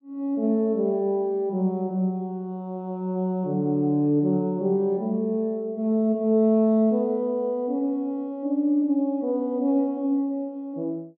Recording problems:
none

